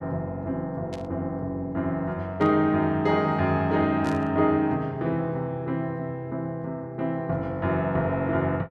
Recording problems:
burst of static; at 1 s, at 2.5 s and at 4 s; peak -11 dB vs average level

